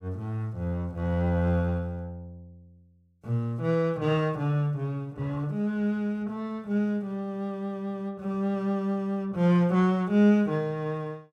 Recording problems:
none

